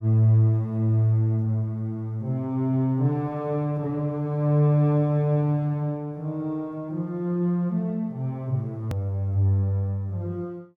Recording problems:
edit click; at 9 s

